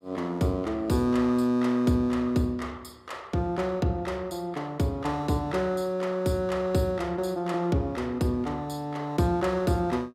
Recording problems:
none

